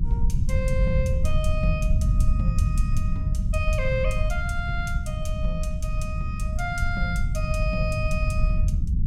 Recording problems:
rumble; below 94 Hz, SNR -6 dB

